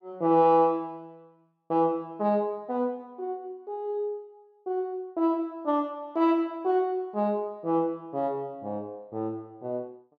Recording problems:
none

